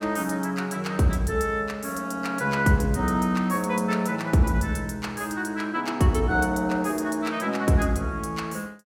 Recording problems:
none

